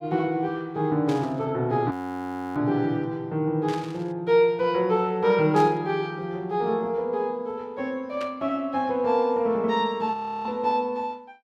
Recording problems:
static burst; 4 times, first at 1 s; peak -9 dB vs average level
frozen audio; at 2 s for 0.5 s and at 10 s

